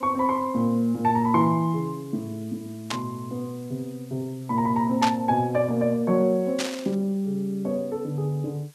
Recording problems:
hiss; slope +1 dB per octave, SNR 27 dB
burst of static; at 3 s, at 5 s and at 6.5 s; peak +2 dB vs average level

